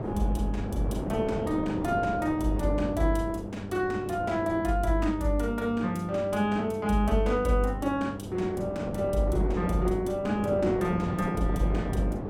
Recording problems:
electrical hum; 50 Hz, harmonics up to 1 kHz, SNR 12 dB
wind on the microphone; below 530 Hz, SNR 8 dB

